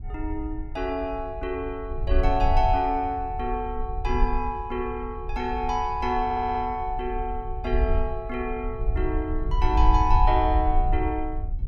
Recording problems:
wind on the microphone; below 60 Hz, SNR 3 dB
audio stuttering; at 6.5 s

